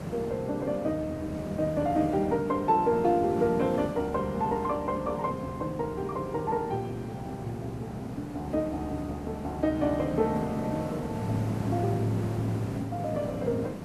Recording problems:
hiss; slope -8 dB per octave, SNR 8 dB

